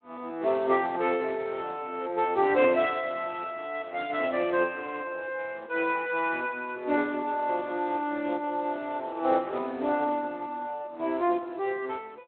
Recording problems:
telephone audio; 240 Hz to 3.8 kHz, Speex

